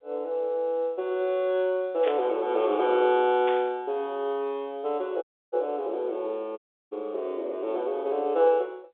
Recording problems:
phone line; 320 Hz to 3.7 kHz, G.711
burst of static; at 2 s and at 3.5 s; peak -6 dB vs average level
audio cutting out; at 5 s and at 6.5 s

